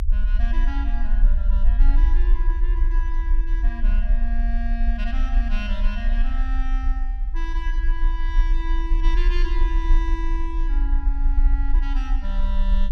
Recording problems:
rumble; below 40 Hz, strongest tone 30 Hz, SNR -11 dB

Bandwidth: 14.5 kHz